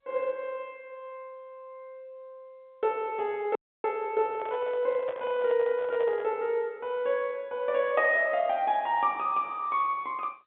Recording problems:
phone line; 170 Hz to 3.8 kHz, G.711
dropout; at 3.5 s
microphone handling noise; from 4.5 to 6.5 s; peak -6 dB vs average level

